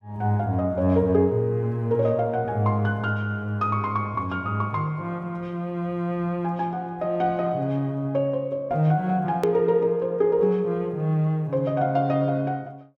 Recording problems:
click at an edit; at 9.5 s

